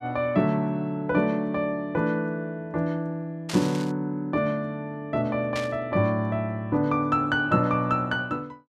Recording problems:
burst of static; at 3.5 s and at 5.5 s; peak -4 dB vs average level

